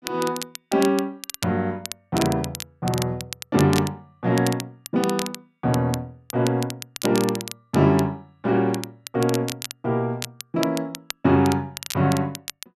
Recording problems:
crackling; vinyl, SNR 11 dB

